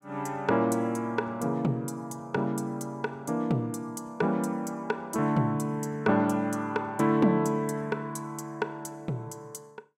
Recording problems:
none

